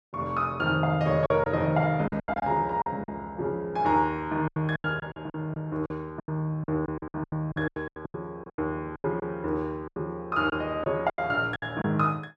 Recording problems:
packet loss; 14% of the sound replaced, filled with silence

